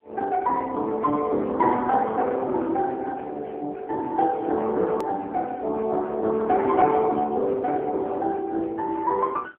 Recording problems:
telephone audio; 240 Hz to 3 kHz, AMR-NB
click at an edit; at 5 s

